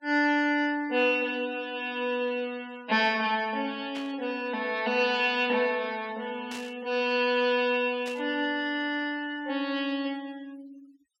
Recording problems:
noise reduction artefacts; signal-to-artefact ratio 24 dB
static burst; at 4 s, at 6.5 s and at 8 s; peak -9 dB vs average level

